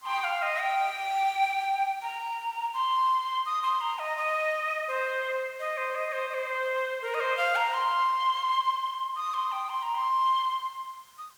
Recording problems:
background hiss; SNR 28 dB

